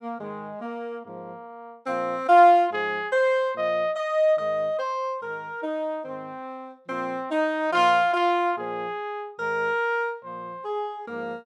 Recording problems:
none

